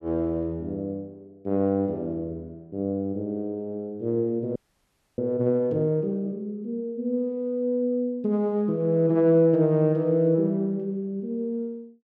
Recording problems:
audio freezing; at 4.5 s for 0.5 s

